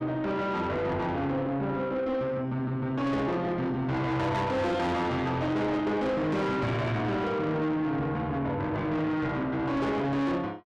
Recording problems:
distorted audio; soft clipping, signal-to-distortion ratio 8 dB

